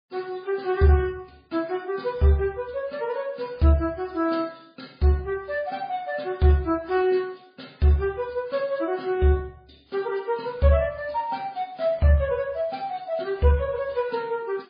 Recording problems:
codec artefacts; MP3, then MP3, log-spectral distance 3 dB, nothing above 4.5 kHz

